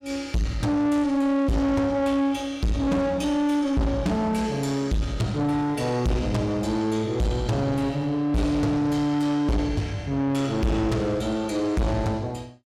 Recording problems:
distortion; soft clipping, signal-to-distortion ratio 6 dB

